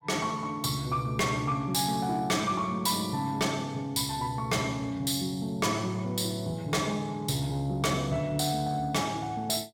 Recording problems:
distorted audio; soft clipping, signal-to-distortion ratio 11 dB

